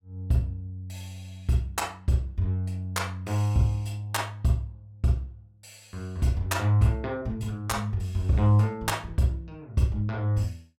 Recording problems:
none

